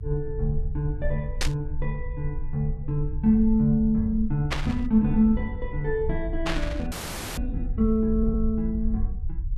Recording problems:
low-frequency rumble; below 62 Hz, strongest tone 20 Hz, SNR 7 dB
static burst; at 1.5 s, at 4.5 s and at 6.5 s; peak +3 dB vs average level
frozen audio; at 7 s

